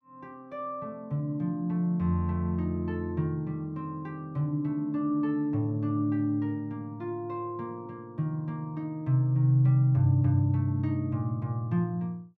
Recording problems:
none

